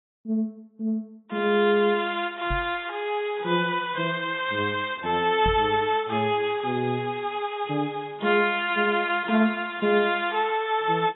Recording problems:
codec artefacts; AAC, log-spectral distance 4 dB, nothing above 3.7 kHz
microphone thump; at 2.5 s and at 5.5 s; peak -2 dB vs average level

